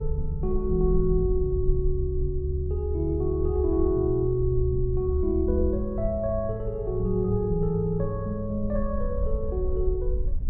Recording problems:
wind on the microphone; below 56 Hz, SNR 7 dB

